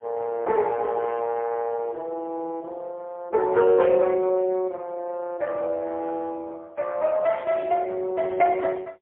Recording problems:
telephone audio; 240 Hz to 3.3 kHz, AMR-NB, then MP3

